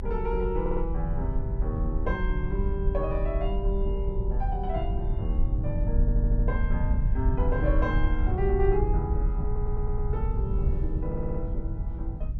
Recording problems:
rumble; below 72 Hz, SNR -4 dB
wind noise; below 330 Hz, SNR 17 dB
stutter; 4 times, first at 0.5 s

